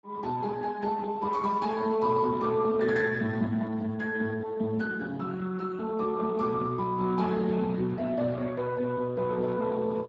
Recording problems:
lossy compression; Speex, log-spectral distance 3 dB, nothing above 7.3 kHz

